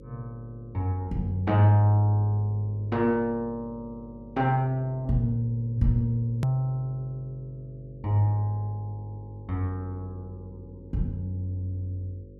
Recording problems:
hum; 50 Hz, harmonics up to 550 Hz, SNR 20 dB
edit click; at 6.5 s

